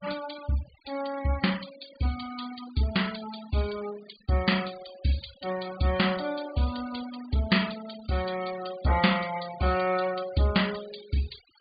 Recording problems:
treble cut off; nothing above 4.7 kHz
noise reduction artefacts; signal-to-artefact ratio 15 dB

